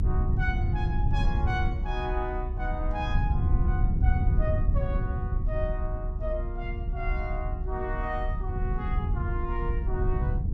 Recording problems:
rumble; below 96 Hz, SNR -6 dB

